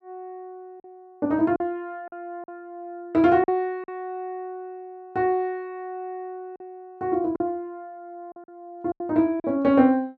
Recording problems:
packet loss; 5% of the sound replaced, filled with silence

